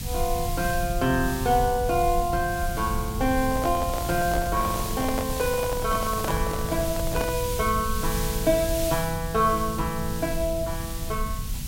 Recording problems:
background hiss; slope +1 dB per octave, SNR 9 dB
low-frequency rumble; below 110 Hz, SNR 7 dB
handling noise; from 3.5 to 7.5 s; peak -1 dB vs average level

